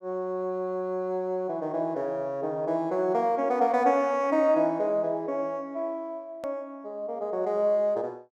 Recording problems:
edit click; at 6.5 s

